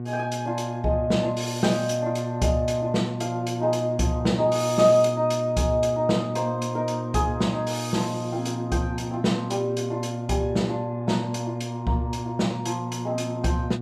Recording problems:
mains hum; 60 Hz, harmonics up to 720 Hz, SNR 6 dB

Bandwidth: 14 kHz